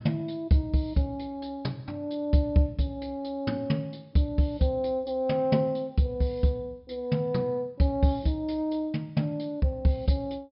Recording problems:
treble missing; nothing above 5.5 kHz

